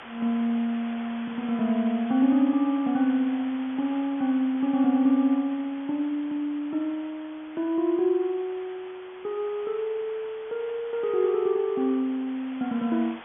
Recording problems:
treble missing; nothing above 3.4 kHz
background hiss; SNR 18 dB

